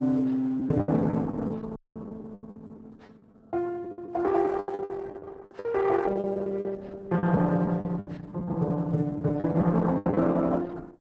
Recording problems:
codec artefacts; Opus, then Opus, log-spectral distance 3 dB, nothing above 7.8 kHz
packet loss; 14% of the sound replaced, filled with the last packet
dropout; at 2 s

